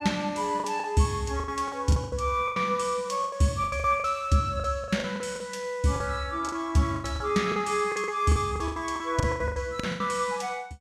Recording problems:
lost packets; 16% of the sound replaced, filled with the last packet

